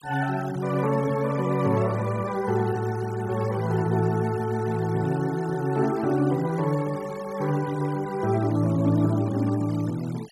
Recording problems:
noise reduction artefacts; signal-to-artefact ratio 20 dB

